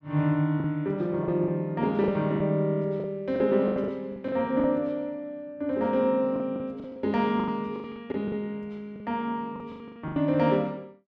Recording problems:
packet loss; 12% of the sound replaced, filled with the last packet

